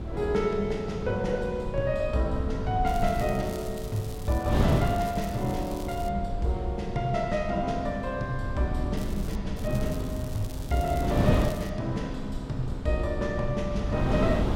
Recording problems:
rumble; below 110 Hz, SNR 8 dB
wind noise; below 350 Hz, SNR 5 dB
crackle; from 3 to 6 s, at 9 s and from 9.5 to 12 s; loose cable, SNR 17 dB

